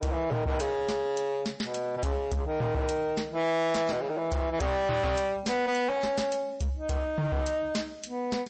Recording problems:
codec artefacts; MP3, log-spectral distance 2 dB, nothing above 8.2 kHz
distorted audio; hard clipping, signal-to-distortion ratio 8 dB

